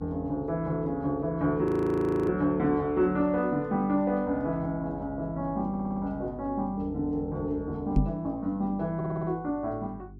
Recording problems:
hum; 50 Hz, harmonics up to 400 Hz, SNR 19 dB
frozen audio; at 1.5 s for 0.5 s
stutter; at 5.5 s and at 9 s
microphone bump; at 8 s; peak +8 dB vs average level

